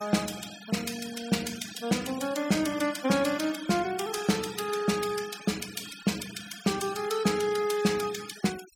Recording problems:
denoising artefacts; signal-to-artefact ratio 13 dB

